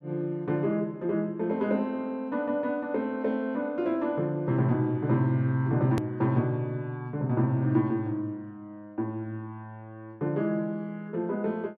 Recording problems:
edit click; at 6 s

